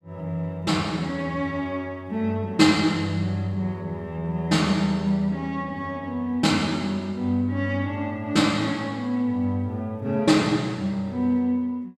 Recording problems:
none

